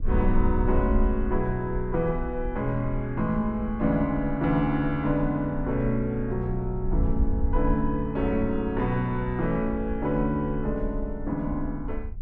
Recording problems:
wind noise; below 58 Hz, SNR 7 dB

